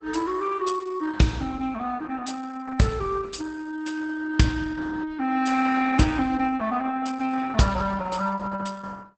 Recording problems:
codec artefacts; Opus, log-spectral distance 4 dB, nothing above 8.2 kHz

